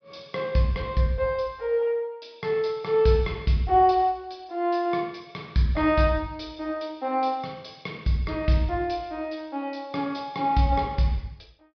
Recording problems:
low-pass filter; nothing above 5.5 kHz

